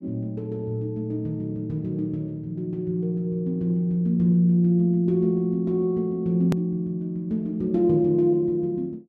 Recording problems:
hard cut with a click; at 6.5 s

